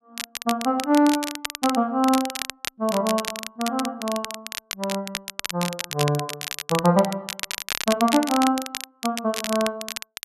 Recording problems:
crackling; vinyl, SNR 7 dB

